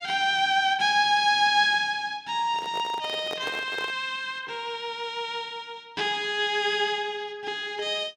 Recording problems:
handling noise; from 2.5 to 4 s; peak -5 dB vs average level

